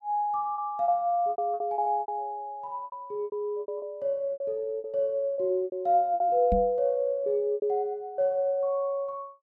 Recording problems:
packet loss; 12% of the sound replaced, filled with repeated pitch periods
knock on the microphone; at 6.5 s; peak +2 dB vs average level

